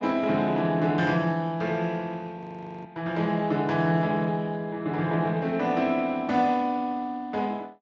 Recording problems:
codec artefacts; Speex, log-spectral distance 3 dB
frozen audio; at 2.5 s

